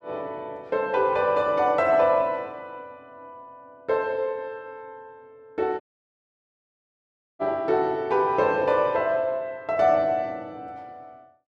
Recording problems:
dropout; at 6 s for 1.5 s

